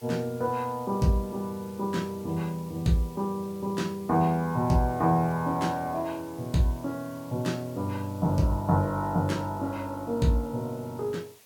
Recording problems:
background hiss; slope 0 dB per octave, SNR 24 dB

